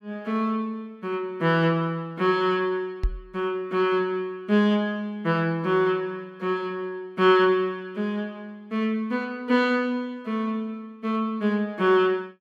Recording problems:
knock on the microphone; at 3 s; peak +2 dB vs average level

